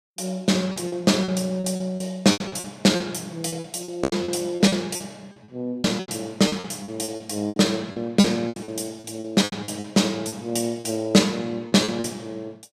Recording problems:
packet loss; 15% of the sound replaced, filled with repeated pitch periods

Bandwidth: 15 kHz